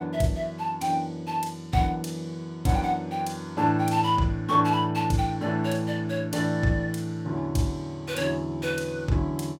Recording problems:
none

